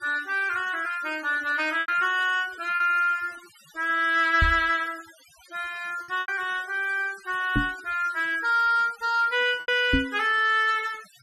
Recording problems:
denoising artefacts; signal-to-artefact ratio 22 dB
packet loss; 3% of the sound replaced, filled with repeated pitch periods
knock on the microphone; at 4.5 s, at 7.5 s and at 10 s; peak +4 dB vs average level

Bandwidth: 13 kHz